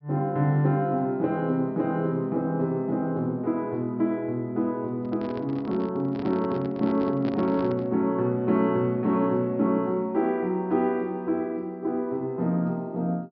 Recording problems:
treble missing; nothing above 5.5 kHz
microphone handling noise; from 5 to 8 s; peak -4 dB vs average level

